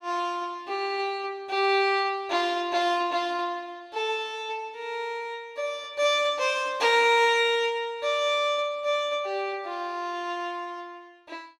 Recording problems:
none

